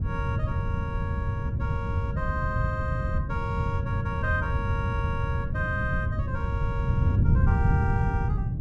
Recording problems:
wind noise; below 140 Hz, SNR -6 dB

